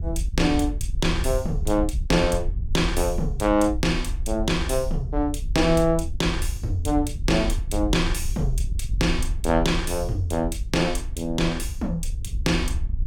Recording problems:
wind on the microphone; below 66 Hz, SNR 5 dB

